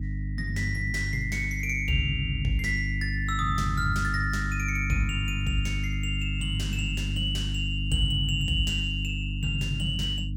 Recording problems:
mains hum; 50 Hz, harmonics up to 300 Hz, SNR 2 dB

